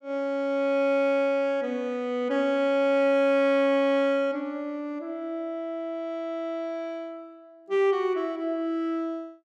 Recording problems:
none

